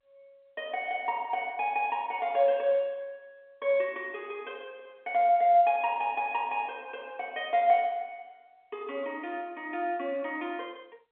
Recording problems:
telephone audio; 300 Hz to 3.5 kHz, G.711

